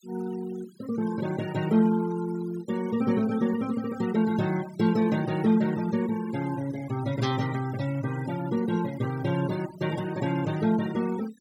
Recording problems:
noise reduction artefacts; signal-to-artefact ratio 16 dB

